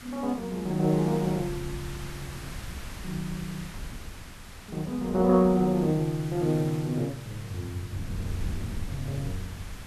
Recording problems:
hiss; slope -2 dB per octave, SNR 16 dB
wind on the microphone; below 140 Hz, SNR 14 dB

